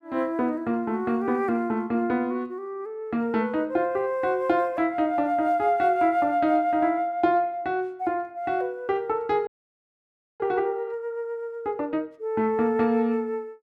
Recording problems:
audio freezing; at 9.5 s for 1 s

